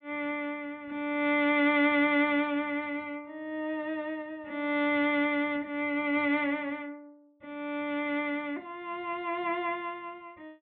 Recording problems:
treble missing; nothing above 4 kHz

